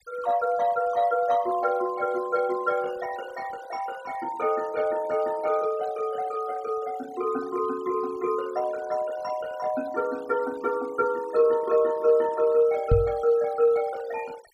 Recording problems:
noise reduction artefacts; signal-to-artefact ratio 21 dB
microphone bump; at 13 s; peak +7 dB vs average level

